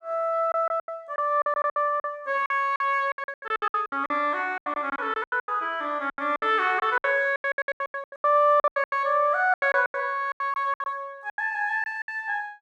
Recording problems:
lost packets; 21% of the sound replaced, filled with silence

